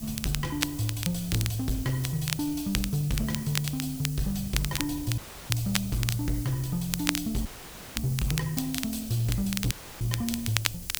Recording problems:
distortion; hard clipping, signal-to-distortion ratio 11 dB
background hiss; slope +3 dB per octave, SNR 12 dB
low-frequency rumble; below 92 Hz, SNR 17 dB
crackling; vinyl, SNR 4 dB
audio cutting out; at 5 s, at 7.5 s for 0.5 s and at 9.5 s

